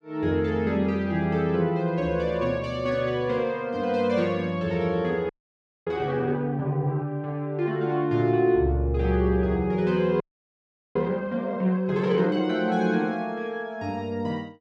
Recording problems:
audio freezing; at 5.5 s for 0.5 s and at 10 s for 1 s

